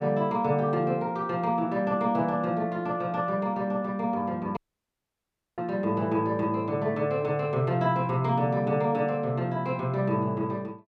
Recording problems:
dropout; at 4.5 s for 1 s

